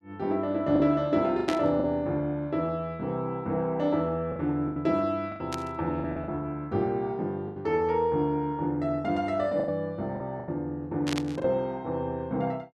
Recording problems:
lost packets; 6% of the sound replaced, filled with the last packet
burst of static; at 1.5 s, at 5.5 s and at 11 s; peak -1 dB vs average level

